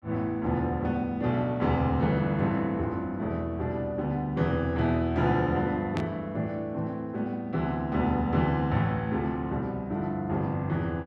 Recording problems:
burst of static; at 6 s; peak -5 dB vs average level

